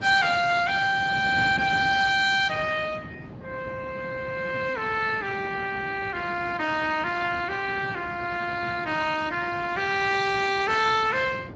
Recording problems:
lossy codec; Speex, log-spectral distance 5 dB
wind noise; below 440 Hz, SNR 14 dB

